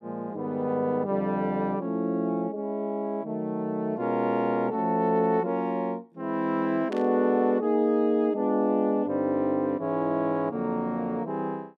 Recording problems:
static burst; at 7 s; peak -11 dB vs average level

